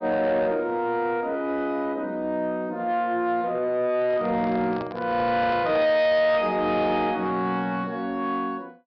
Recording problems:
low-pass filter; nothing above 5.5 kHz
distorted audio; soft clipping, signal-to-distortion ratio 11 dB
microphone handling noise; from 4 to 6.5 s; peak -7 dB vs average level

